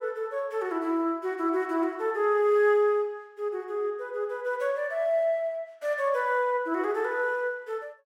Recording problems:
none

